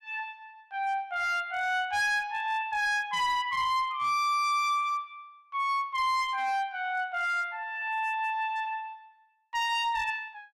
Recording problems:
distorted audio; hard clipping, uneven, signal-to-distortion ratio 11 dB

